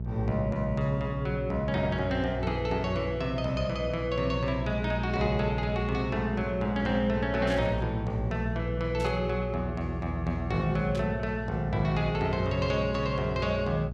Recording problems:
hum; 60 Hz, harmonics up to 480 Hz, SNR 5 dB
static burst; at 7.5 s, at 9 s and at 11 s; peak -8 dB vs average level

